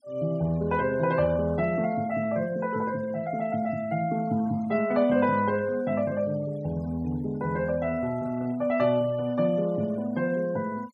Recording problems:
noise reduction artefacts; signal-to-artefact ratio 23 dB

